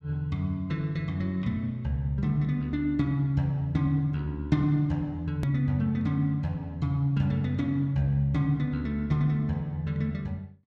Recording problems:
edit click; at 5.5 s

